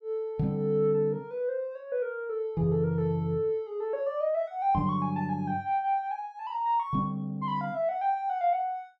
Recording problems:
none

